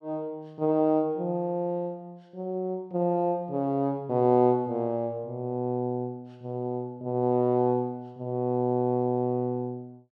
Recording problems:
none

